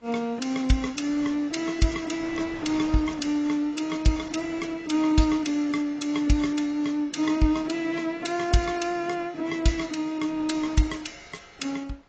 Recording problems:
codec artefacts; AAC, log-spectral distance 3 dB, nothing above 7.3 kHz
wind on the microphone; below 1.8 kHz, SNR 24 dB

